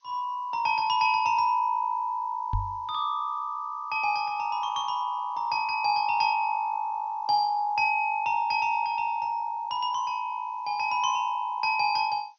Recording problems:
low-pass filter; nothing above 6.3 kHz
background hiss; slope +5 dB per octave, SNR 43 dB
microphone thump; at 2.5 s; peak 0 dB vs average level

